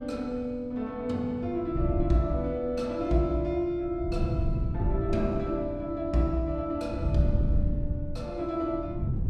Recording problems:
wind noise; below 130 Hz, SNR 3 dB

